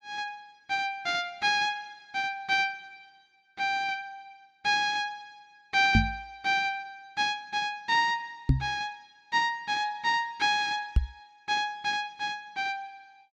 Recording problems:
microphone bump; at 6 s, at 8.5 s and at 11 s; peak +9 dB vs average level

